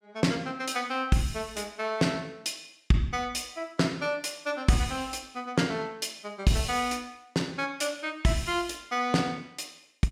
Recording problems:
none

